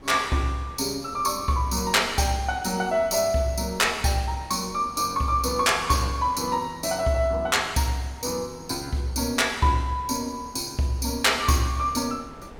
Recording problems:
wind noise; below 770 Hz, SNR 22 dB

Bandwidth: 17.5 kHz